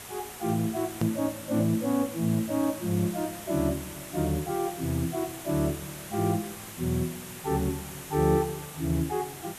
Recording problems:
background hiss; slope -2 dB per octave, SNR 11 dB
edit click; at 1 s

